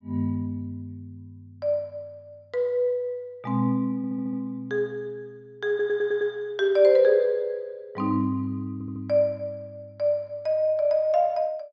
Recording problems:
treble missing; nothing above 8 kHz
stutter; at 4 s, at 5.5 s and at 8.5 s

